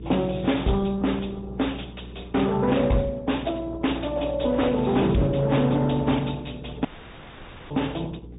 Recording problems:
treble cut off; nothing above 3.8 kHz
codec artefacts; AAC, then Opus, log-spectral distance 5 dB
distortion; hard clipping, signal-to-distortion ratio 12 dB
electrical hum; 60 Hz, harmonics up to 480 Hz, SNR 16 dB
dropout; at 7 s for 1 s

